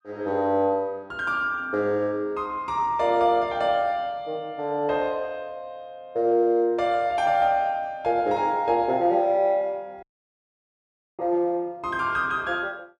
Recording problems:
audio cutting out; at 10 s for 1 s

